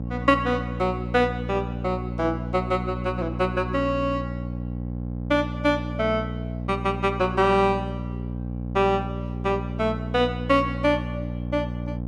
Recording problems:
electrical hum; 60 Hz, harmonics up to 780 Hz, SNR 6 dB

